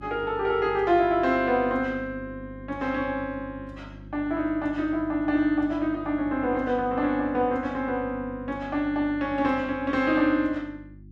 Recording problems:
electrical hum; 50 Hz, harmonics up to 350 Hz, SNR 19 dB

